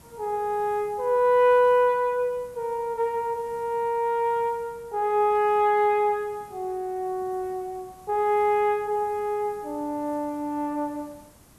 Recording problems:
hiss; SNR 27 dB

